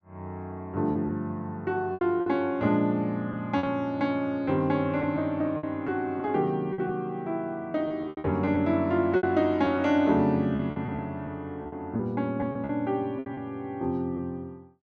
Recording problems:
packet loss; 8% of the sound replaced, filled with repeated pitch periods

